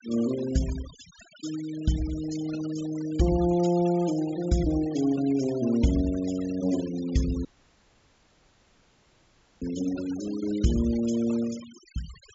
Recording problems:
low-pass filter; nothing above 7.5 kHz
noise reduction artefacts; signal-to-artefact ratio 17 dB
audio cutting out; at 7.5 s for 2 s

